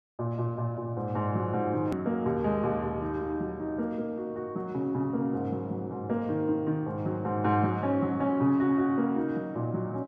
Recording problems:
hard cut with a click; at 2 s

